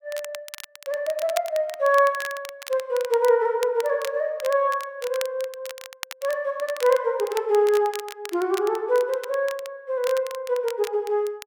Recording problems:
crackle; vinyl, SNR 15 dB

